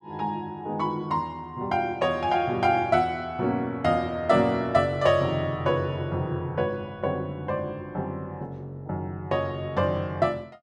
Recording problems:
none

